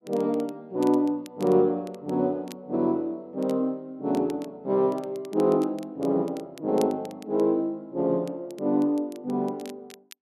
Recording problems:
crackle; vinyl, SNR 25 dB

